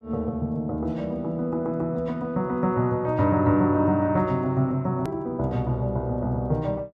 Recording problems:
hard cut with a click; at 5 s

